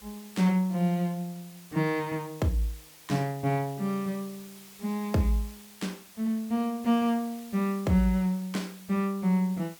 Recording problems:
background hiss; slope 0 dB per octave, SNR 20 dB

